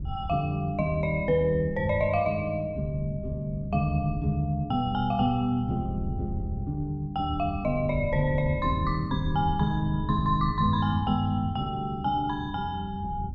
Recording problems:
wind on the microphone; below 120 Hz, SNR 10 dB

